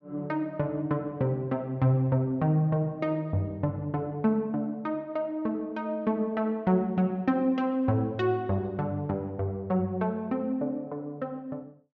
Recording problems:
treble cut off; nothing above 8 kHz

